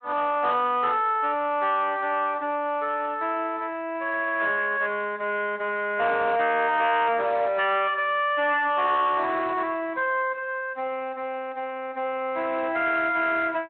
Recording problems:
phone line; 240 Hz to 3.5 kHz, Speex
distorted audio; soft clipping, signal-to-distortion ratio 10 dB

